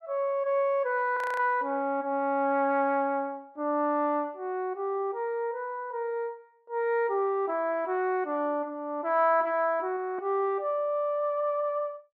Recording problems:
frozen audio; at 1 s and at 10 s

